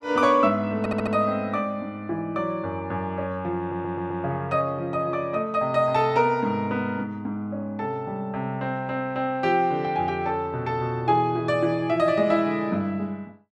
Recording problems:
audio stuttering; at 1 s and at 3.5 s

